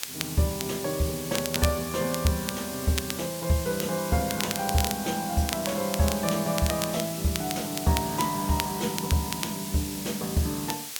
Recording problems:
hiss; slope +2 dB per octave, SNR 7 dB
crackling; vinyl, SNR 7 dB

